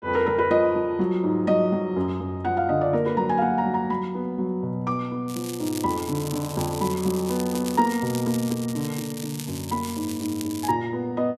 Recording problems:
crackling; from 5.5 to 11 s; loose cable, SNR 12 dB

